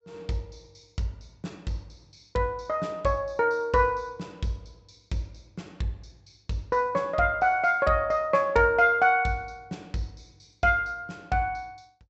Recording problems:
low-pass filter; nothing above 8 kHz

